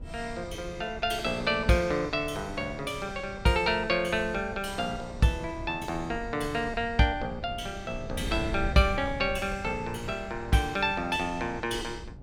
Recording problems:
wind noise; below 140 Hz, SNR 13 dB

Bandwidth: 17 kHz